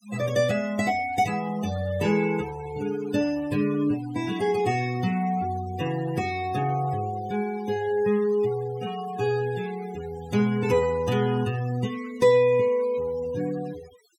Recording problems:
noise reduction artefacts; signal-to-artefact ratio 17 dB

